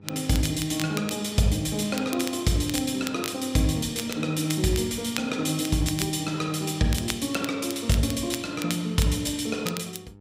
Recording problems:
hum; 50 Hz, harmonics up to 1 kHz, SNR 24 dB
crackle; vinyl, SNR 11 dB

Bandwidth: 15.5 kHz